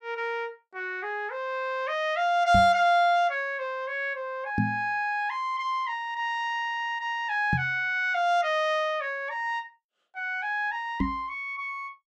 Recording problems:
microphone bump; 4 times, first at 2.5 s; peak +4 dB vs average level

